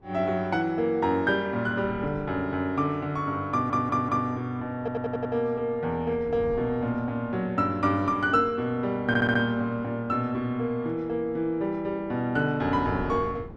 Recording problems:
wind on the microphone; below 340 Hz, SNR 18 dB
audio stuttering; at 3.5 s, at 5 s and at 9 s

